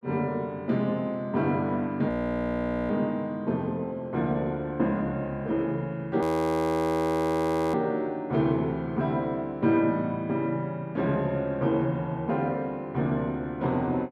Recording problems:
frozen audio; at 2 s for 1 s and at 6 s for 1.5 s

